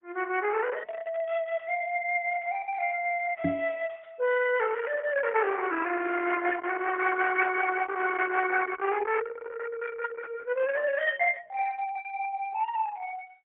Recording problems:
treble cut off; nothing above 3.8 kHz
lossy compression; Opus, log-spectral distance 4 dB
microphone thump; at 3.5 s; peak +2 dB vs average level

